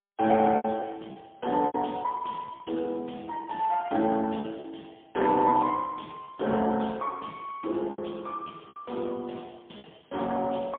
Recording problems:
telephone audio; 240 Hz to 3.4 kHz, AMR-NB, then MP3
lost packets; 7% of the sound replaced, filled with repeated pitch periods

